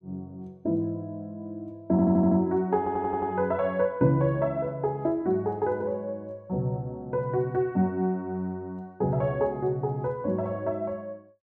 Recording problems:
stutter; at 2 s and at 3 s

